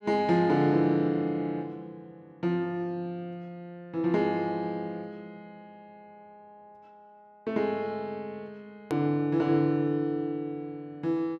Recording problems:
hard cut with a click; at 9 s

